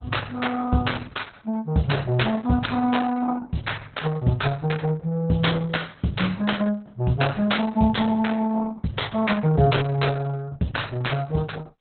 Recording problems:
codec artefacts; Opus, log-spectral distance 5 dB, nothing above 4 kHz

